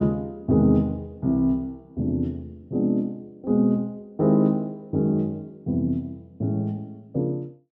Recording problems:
none

